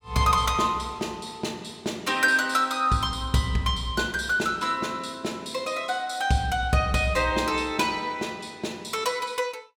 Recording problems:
none

